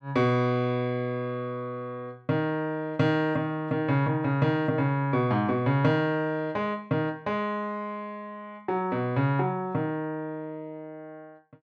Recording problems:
none

